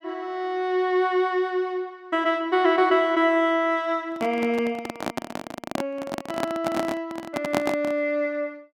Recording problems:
microphone handling noise; from 4 to 8 s; peak +3 dB vs average level

